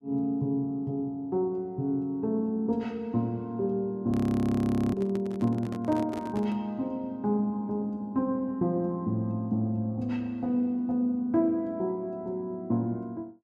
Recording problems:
frozen audio; at 4 s for 1 s
handling noise; from 5 to 6.5 s; peak -6 dB vs average level

